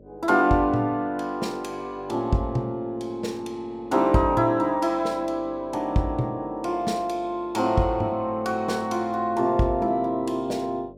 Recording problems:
hum; 50 Hz, harmonics up to 600 Hz, SNR 25 dB

